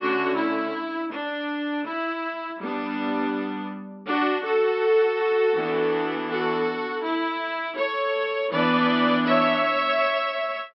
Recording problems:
treble missing; nothing above 5.6 kHz

